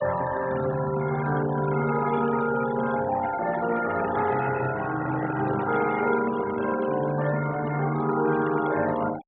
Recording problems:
treble cut off; nothing above 4 kHz
noise reduction artefacts; signal-to-artefact ratio 14 dB
handling noise; from 5 to 7 s; peak -6 dB vs average level

